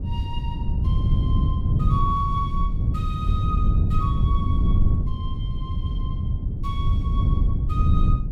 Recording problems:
wind on the microphone; below 120 Hz, SNR -9 dB

